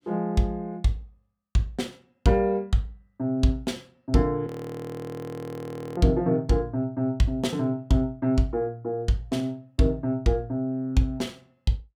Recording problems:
frozen audio; at 4.5 s for 1.5 s

